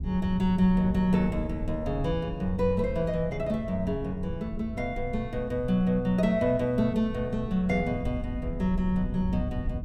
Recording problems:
rumble; below 110 Hz, SNR 9 dB

